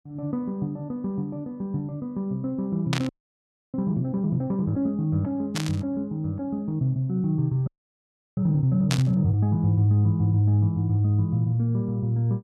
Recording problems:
burst of static; at 3 s, at 5.5 s and at 9 s; peak +1 dB vs average level
frozen audio; at 3 s for 0.5 s and at 7.5 s for 0.5 s

